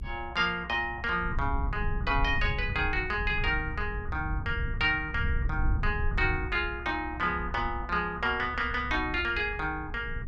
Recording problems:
low-frequency rumble; below 92 Hz, SNR 6 dB

